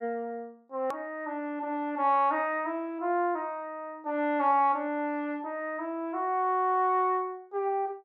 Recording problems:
click at an edit; at 1 s

